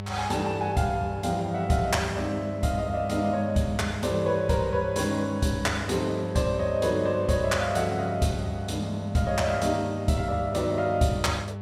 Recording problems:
hum; 50 Hz, harmonics up to 1.3 kHz, SNR 9 dB

